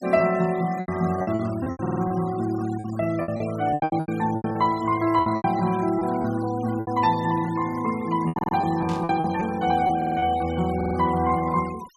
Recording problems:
denoising artefacts; signal-to-artefact ratio 18 dB
packet loss; 12% of the sound replaced, filled with repeated pitch periods
audio stuttering; 4 times, first at 2 s
burst of static; at 9 s; peak -12 dB vs average level

